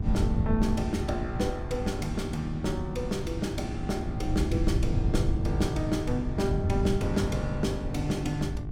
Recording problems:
mains hum; 50 Hz, harmonics up to 1.2 kHz, SNR 12 dB
wind noise; below 130 Hz, SNR 2 dB

